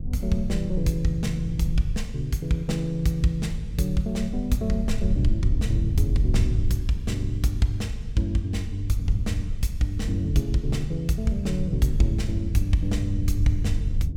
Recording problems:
rumble; below 92 Hz, SNR 3 dB

